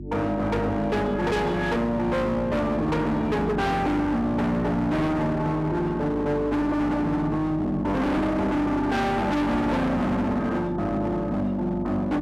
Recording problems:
distorted audio; hard clipping, signal-to-distortion ratio 6 dB
hum; 50 Hz, harmonics up to 350 Hz, SNR 12 dB

